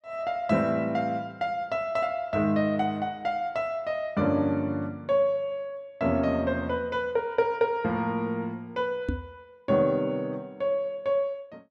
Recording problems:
microphone bump; at 9 s; peak +2 dB vs average level

